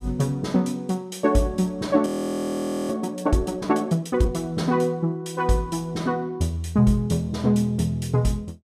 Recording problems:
frozen audio; at 2 s for 1 s

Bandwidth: 15 kHz